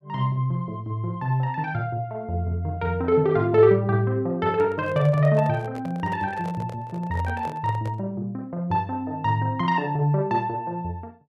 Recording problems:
handling noise; from 4.5 to 8 s; peak -10 dB vs average level

